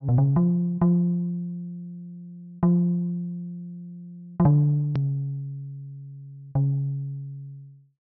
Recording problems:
treble cut off; nothing above 5.7 kHz
hard cut with a click; at 5 s

